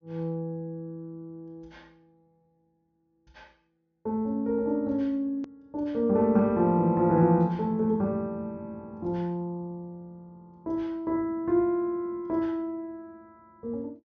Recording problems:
treble missing; nothing above 6.9 kHz
hard cut with a click; at 5.5 s

